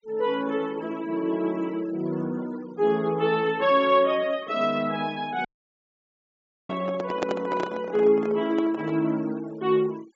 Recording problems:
treble cut off; nothing above 8 kHz
denoising artefacts; signal-to-artefact ratio 24 dB
dropout; at 5.5 s for 1 s
handling noise; from 6.5 to 9 s; peak +2 dB vs average level

